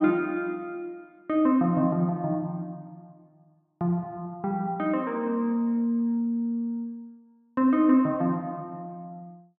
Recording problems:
none

